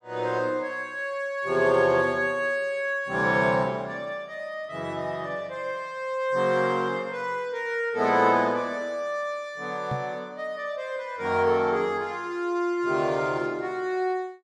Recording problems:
microphone thump; at 10 s; peak -2 dB vs average level

